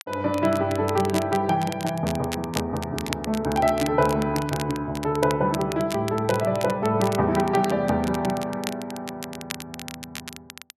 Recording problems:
crackle; vinyl, SNR 13 dB

